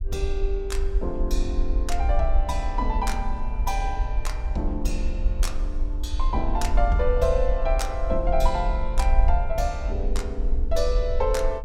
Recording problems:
low-frequency rumble; below 50 Hz, SNR -1 dB

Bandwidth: 17 kHz